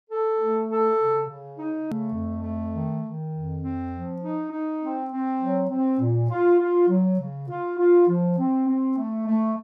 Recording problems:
click at an edit; at 2 s

